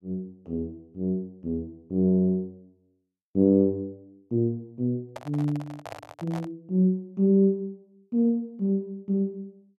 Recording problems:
microphone handling noise; from 5 to 6.5 s; peak -8 dB vs average level

